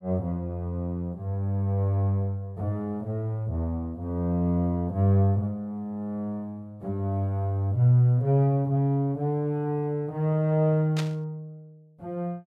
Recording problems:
static burst; at 11 s; peak -3 dB vs average level

